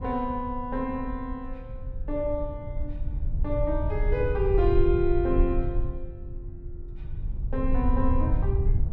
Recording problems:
rumble; below 74 Hz, SNR 2 dB

